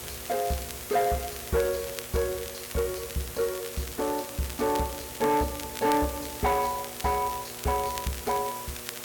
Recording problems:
distorted audio; soft clipping, signal-to-distortion ratio 12 dB
hum; 60 Hz, harmonics up to 1.9 kHz, SNR 19 dB
background hiss; slope -1 dB per octave, SNR 9 dB
crackle; vinyl, SNR 14 dB

